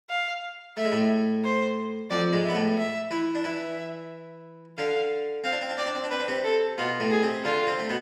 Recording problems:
none

